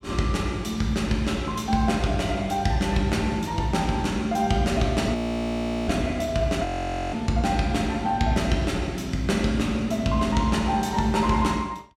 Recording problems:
frozen audio; at 5 s for 0.5 s and at 6.5 s

